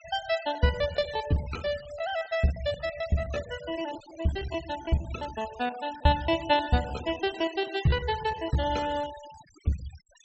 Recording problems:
treble cut off; nothing above 7.9 kHz
noise reduction artefacts; signal-to-artefact ratio 16 dB
lost packets; 14% of the sound replaced, filled with repeated pitch periods

